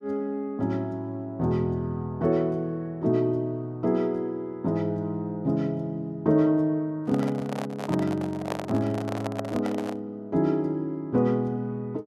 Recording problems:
microphone handling noise; from 7 to 10 s; peak 0 dB vs average level

